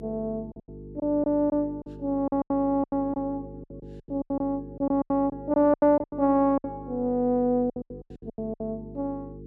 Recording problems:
hum; 50 Hz, harmonics up to 450 Hz, SNR 16 dB
lost packets; 15% of the sound replaced, filled with silence

